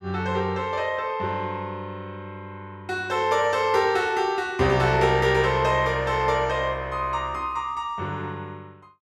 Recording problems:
none

